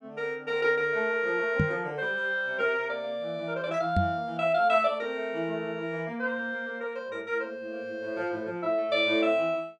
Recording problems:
knock on the microphone; at 1.5 s and at 4 s; peak +6 dB vs average level

